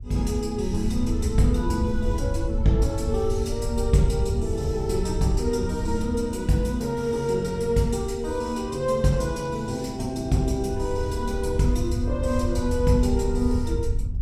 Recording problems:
wind on the microphone; below 90 Hz, SNR 5 dB

